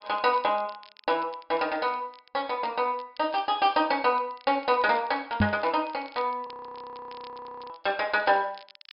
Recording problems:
treble missing; nothing above 5.5 kHz
crackle; vinyl, SNR 26 dB
microphone bump; at 5.5 s; peak +6 dB vs average level
audio freezing; at 6.5 s for 1 s

